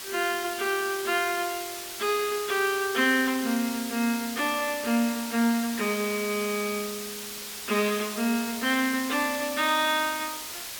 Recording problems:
hiss; slope +1 dB per octave, SNR 8 dB

